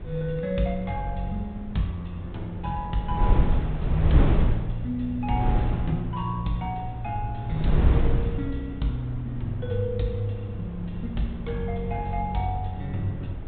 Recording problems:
treble missing; nothing above 4 kHz
wind noise; below 120 Hz, SNR 1 dB

